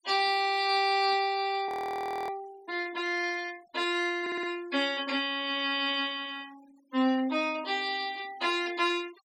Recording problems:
denoising artefacts; signal-to-artefact ratio 22 dB
audio freezing; at 1.5 s for 0.5 s
stutter; at 4 s

